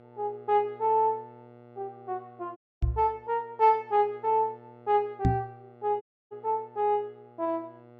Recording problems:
hum; 60 Hz, harmonics up to 2 kHz, SNR 25 dB
audio cutting out; at 2.5 s and at 6 s
microphone thump; at 3 s and at 5.5 s; peak +7 dB vs average level

